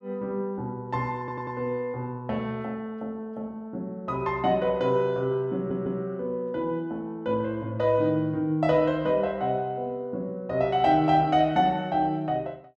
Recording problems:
stutter; at 1 s and at 5.5 s

